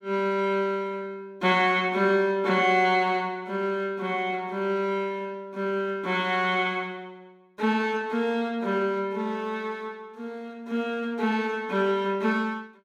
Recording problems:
none

